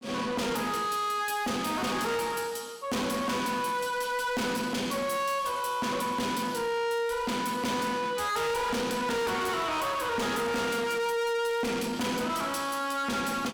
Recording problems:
distortion; soft clipping, signal-to-distortion ratio 7 dB

